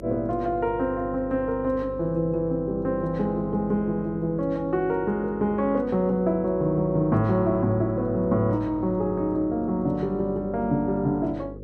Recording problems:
electrical hum; 50 Hz, harmonics up to 550 Hz, SNR 15 dB

